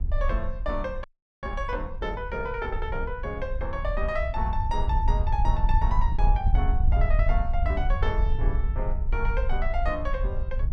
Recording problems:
wind noise; below 60 Hz, SNR -3 dB
audio freezing; at 1 s

